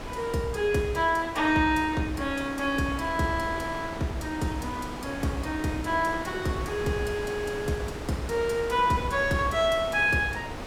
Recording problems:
wind noise; below 1.4 kHz, SNR 10 dB

